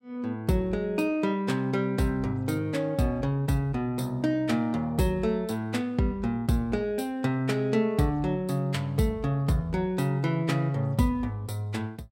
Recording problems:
none

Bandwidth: 16 kHz